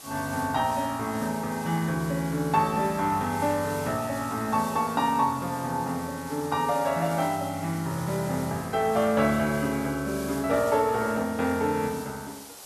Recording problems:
background hiss; SNR 15 dB

